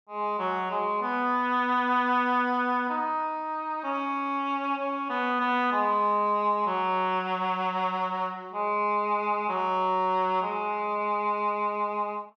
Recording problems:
none

